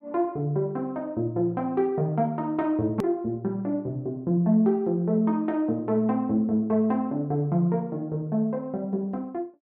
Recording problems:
hard cut with a click; at 3 s

